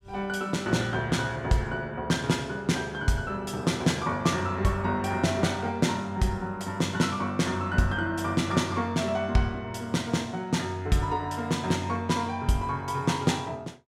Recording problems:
none

